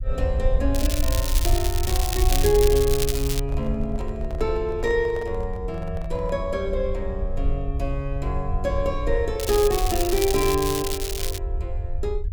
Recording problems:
low-frequency rumble; below 64 Hz, SNR 3 dB
crackle; from 1 to 3.5 s and from 9.5 to 11 s; loose cable, SNR 4 dB
microphone handling noise; from 3.5 to 6.5 s; peak -10 dB vs average level

